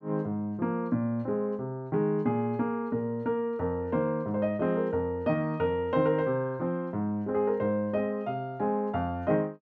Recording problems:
none

